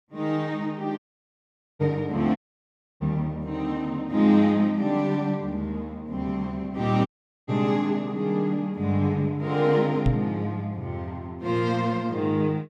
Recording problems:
audio cutting out; at 1 s for 1 s, at 2.5 s for 0.5 s and at 7 s
knock on the microphone; at 10 s; peak +6 dB vs average level

